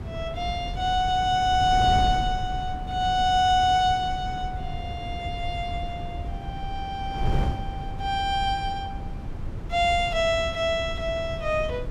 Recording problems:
wind on the microphone; below 140 Hz, SNR 9 dB

